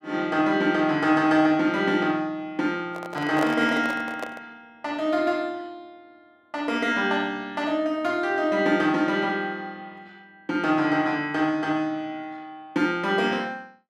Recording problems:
handling noise; from 3 to 4.5 s; peak 0 dB vs average level

